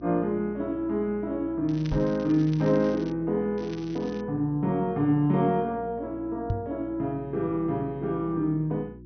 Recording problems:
low-pass filter; nothing above 6.1 kHz
electrical hum; 60 Hz, harmonics up to 360 Hz, SNR 19 dB
crackle; from 1.5 to 3 s and at 3.5 s; loose cable, SNR 22 dB
microphone thump; at 2 s and at 6.5 s; peak +2 dB vs average level

